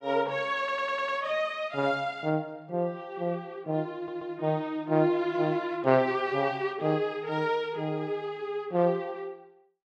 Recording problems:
audio stuttering; at 0.5 s and at 4 s

